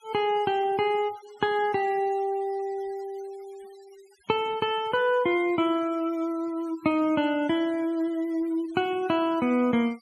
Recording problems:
noise reduction artefacts; signal-to-artefact ratio 25 dB

